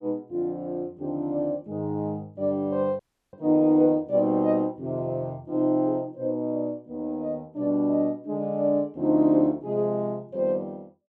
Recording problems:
dropout; at 3 s

